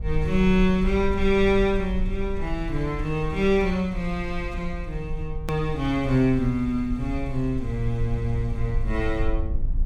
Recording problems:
low-frequency rumble; below 58 Hz, strongest tone 20 Hz, SNR 8 dB
edit click; at 5.5 s

